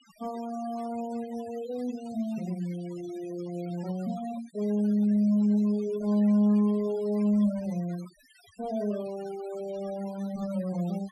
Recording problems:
noise reduction artefacts; signal-to-artefact ratio 21 dB

